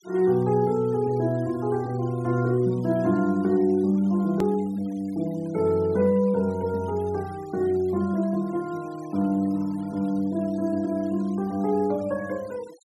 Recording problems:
denoising artefacts; signal-to-artefact ratio 26 dB
edit click; at 4.5 s

